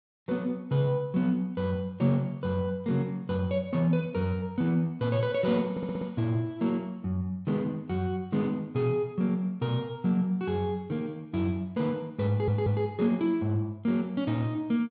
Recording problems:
audio stuttering; at 5.5 s and at 12 s

